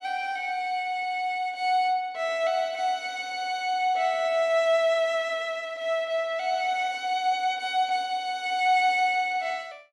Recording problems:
none

